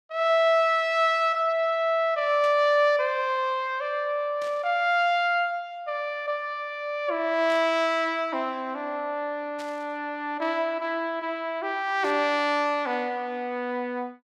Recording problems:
burst of static; 5 times, first at 2.5 s; peak -13 dB vs average level

